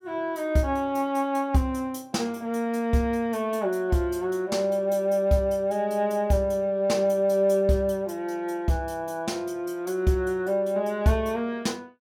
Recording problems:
none

